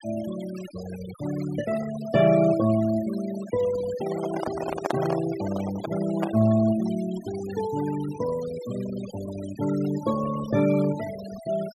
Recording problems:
denoising artefacts; signal-to-artefact ratio 14 dB
handling noise; from 4 to 6.5 s; peak +2 dB vs average level

